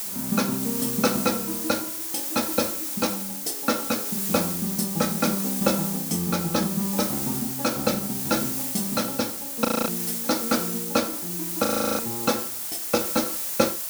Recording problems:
background hiss; slope +1 dB per octave, SNR 1 dB
frozen audio; at 9.5 s and at 12 s

